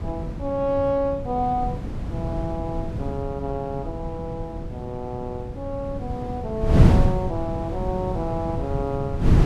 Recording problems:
wind noise; below 180 Hz, SNR -1 dB

